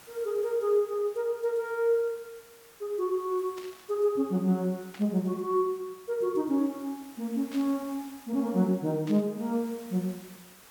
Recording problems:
hiss; slope -2 dB per octave, SNR 22 dB
static burst; 4 times, first at 3.5 s; peak -11 dB vs average level

